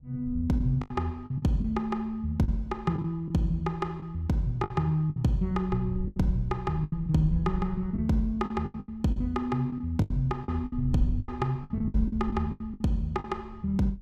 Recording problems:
wind on the microphone; below 76 Hz, SNR 12 dB
lost packets; 11% of the sound replaced, filled with the last packet

